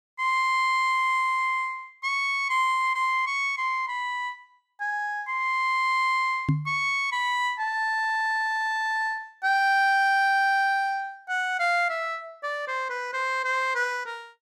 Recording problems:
microphone bump; at 6.5 s; peak +5 dB vs average level

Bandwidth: 14.5 kHz